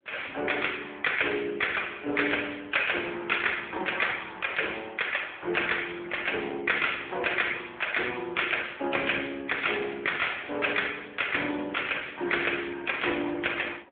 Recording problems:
telephone audio; 220 Hz to 3.4 kHz, AMR-NB

